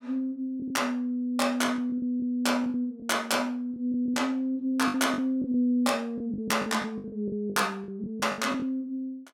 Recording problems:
lost packets; 11% of the sound replaced, filled with the last packet

